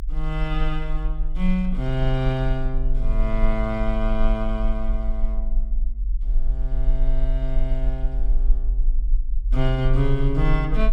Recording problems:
low-frequency rumble; below 42 Hz, strongest tone 22 Hz, SNR -1 dB

